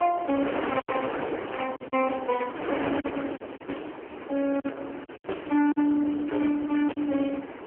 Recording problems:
telephone audio; 220 Hz to 2.9 kHz, AMR-NB
distorted audio; hard clipping, signal-to-distortion ratio 8 dB
wind noise; below 1.2 kHz, SNR 8 dB
lost packets; 6% of the sound replaced, filled with silence

